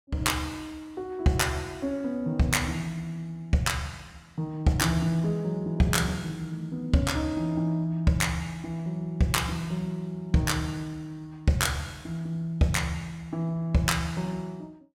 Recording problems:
none

